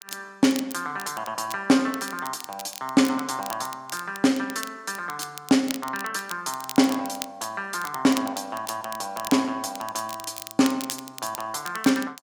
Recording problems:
crackle; vinyl, SNR 13 dB

